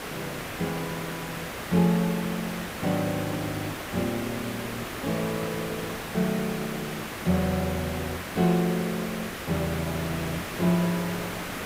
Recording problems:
hiss; slope -4 dB per octave, SNR 5 dB

